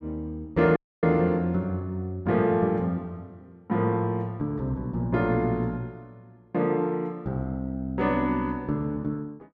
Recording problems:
audio cutting out; at 1 s

